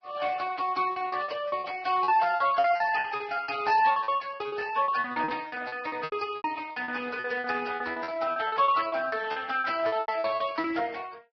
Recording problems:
lossy compression; Speex, then Vorbis, log-spectral distance 5 dB, nothing above 5.2 kHz
lost packets; 17% of the sound replaced, filled with repeated pitch periods

